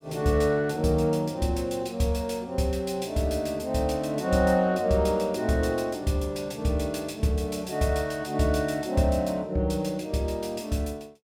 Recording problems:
none

